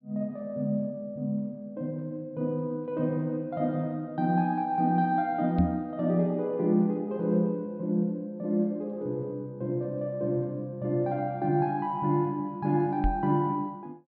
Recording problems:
low-pass filter; nothing above 5.5 kHz
microphone thump; at 5.5 s and at 13 s; peak +4 dB vs average level

